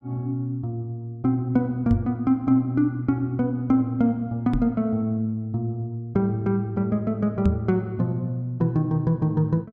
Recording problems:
microphone bump; at 2 s, at 4.5 s and at 7.5 s; peak +5 dB vs average level

